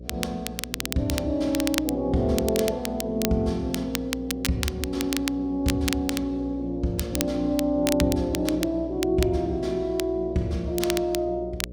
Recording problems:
electrical hum; 60 Hz, harmonics up to 600 Hz, SNR 14 dB
crackling; vinyl, SNR 7 dB

